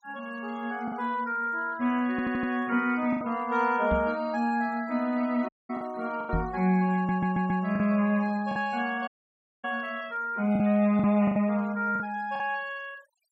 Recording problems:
denoising artefacts; signal-to-artefact ratio 25 dB
lost packets; 5% of the sound replaced, filled with the last packet
stutter; at 2 s and at 7 s
microphone bump; at 4 s and at 6.5 s; peak +2 dB vs average level
dropout; at 5.5 s and at 9 s for 0.5 s

